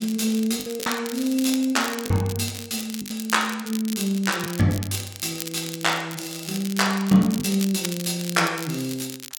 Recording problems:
crackling; vinyl, SNR 11 dB
packet loss; 4% of the sound replaced, filled with the last packet

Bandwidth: 17 kHz